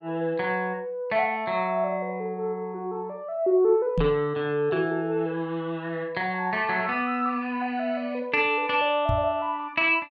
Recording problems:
knock on the microphone; at 4 s and at 9 s; peak +3 dB vs average level

